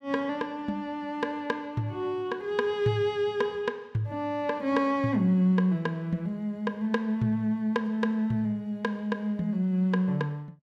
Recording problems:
none

